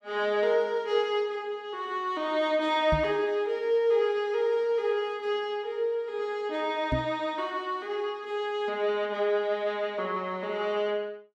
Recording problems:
microphone bump; at 3 s and at 7 s; peak +2 dB vs average level

